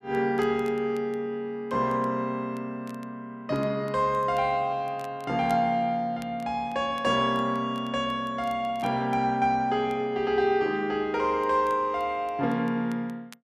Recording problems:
crackle; vinyl, SNR 29 dB

